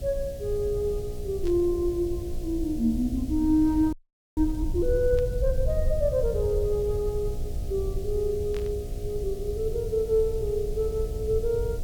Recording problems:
hum; 60 Hz, harmonics up to 720 Hz, SNR 16 dB
background hiss; SNR 23 dB
rumble; below 76 Hz, SNR 7 dB
static burst; at 1.5 s, at 5 s and at 8.5 s; peak -12 dB vs average level
audio freezing; at 4 s

